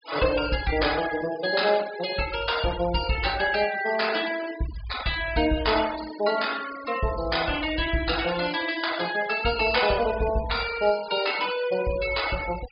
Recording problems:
treble cut off; nothing above 5.1 kHz
denoising artefacts; signal-to-artefact ratio 13 dB

